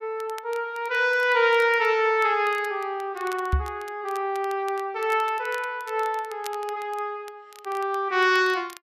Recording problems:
crackling; vinyl, SNR 23 dB
microphone bump; at 3.5 s; peak +4 dB vs average level

